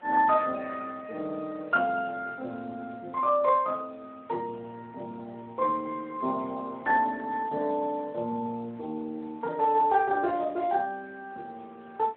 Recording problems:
phone line; 260 Hz to 2.8 kHz, Speex
background hiss; SNR 29 dB

